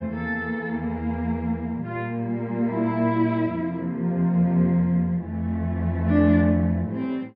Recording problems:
treble cut off; nothing above 5.4 kHz

